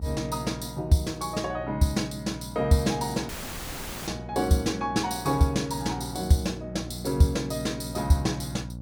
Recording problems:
hum; 60 Hz, harmonics up to 600 Hz, SNR 13 dB
audio cutting out; at 3.5 s for 1 s

